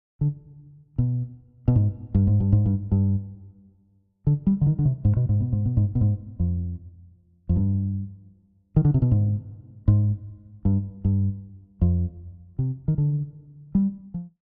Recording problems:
none

